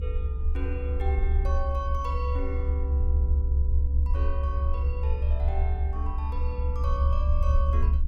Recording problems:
hum; 60 Hz, harmonics up to 480 Hz, SNR 17 dB
rumble; below 70 Hz, strongest tone 68 Hz, SNR -10 dB

